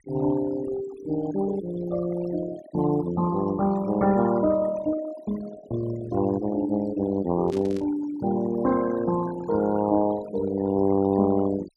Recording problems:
denoising artefacts; signal-to-artefact ratio 14 dB
static burst; at 7.5 s; peak -15 dB vs average level

